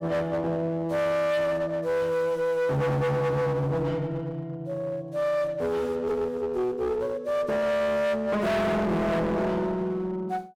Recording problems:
distortion; hard clipping, uneven, signal-to-distortion ratio 6 dB

